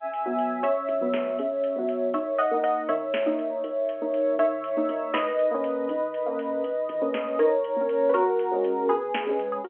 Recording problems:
phone line; 260 Hz to 3.3 kHz, G.711

